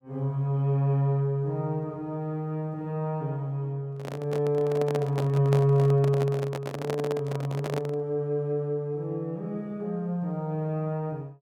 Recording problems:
handling noise; from 4 to 8 s; peak 0 dB vs average level

